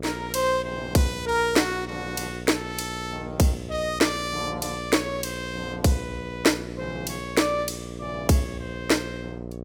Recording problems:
mains hum; 60 Hz, harmonics up to 780 Hz, SNR 11 dB

